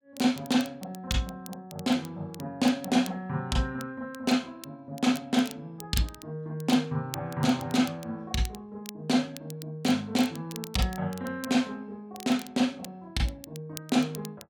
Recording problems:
crackle; vinyl, SNR 17 dB

